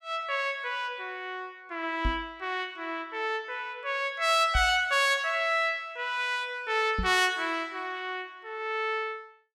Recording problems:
knock on the microphone; at 2 s, at 4.5 s and at 7 s; peak +1 dB vs average level

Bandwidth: 16 kHz